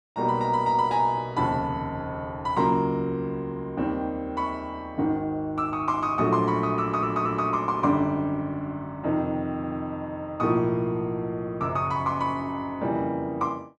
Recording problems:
stutter; at 7 s and at 9.5 s

